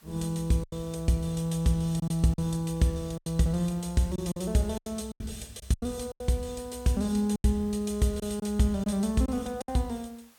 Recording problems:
hiss; SNR 28 dB
packet loss; 8% of the sound replaced, filled with silence

